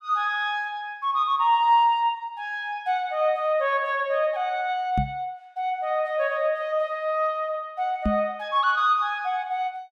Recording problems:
microphone thump; at 5 s and at 8 s; peak +3 dB vs average level

